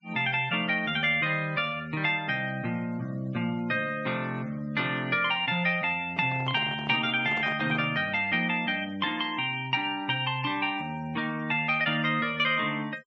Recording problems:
treble missing; nothing above 7.7 kHz
noise reduction artefacts; signal-to-artefact ratio 24 dB
microphone handling noise; from 6 to 8 s; peak -7 dB vs average level

